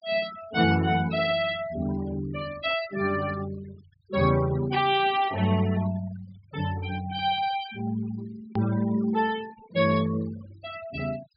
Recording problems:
low-pass filter; nothing above 5.5 kHz
denoising artefacts; signal-to-artefact ratio 17 dB
click at an edit; at 8.5 s

